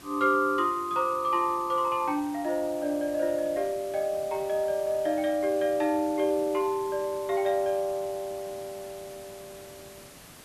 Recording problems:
hiss; slope -3 dB per octave, SNR 19 dB

